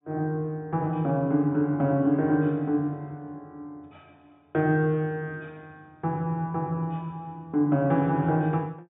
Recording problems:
treble cut off; nothing above 4 kHz

